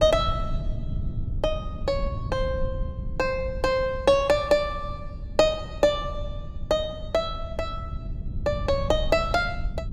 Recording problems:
low-frequency rumble; below 110 Hz, SNR 8 dB

